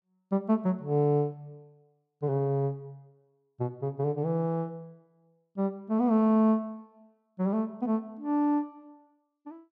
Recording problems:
none

